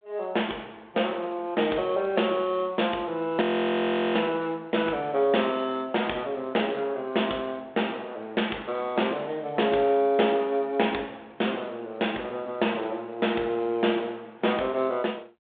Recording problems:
phone line; 280 Hz to 3.7 kHz, G.726
frozen audio; at 3.5 s for 0.5 s

